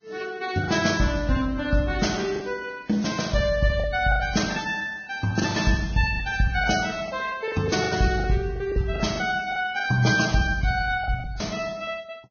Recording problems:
lossy compression; Vorbis, log-spectral distance 4 dB, nothing above 6.3 kHz
lost packets; 9% of the sound replaced, filled with the last packet

